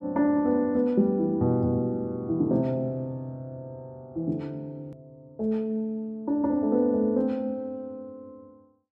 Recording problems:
hard cut with a click; at 5 s

